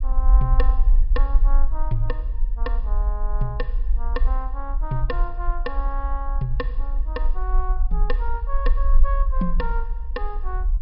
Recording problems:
treble missing; nothing above 5.5 kHz
low-frequency rumble; below 42 Hz, strongest tone 22 Hz, SNR -7 dB

